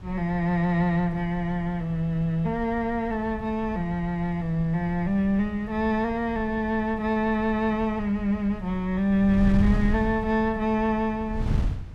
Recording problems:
wind noise; below 120 Hz, SNR 10 dB

